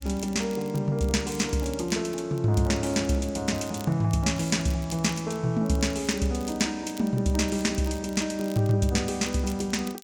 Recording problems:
crackling; vinyl, SNR 21 dB

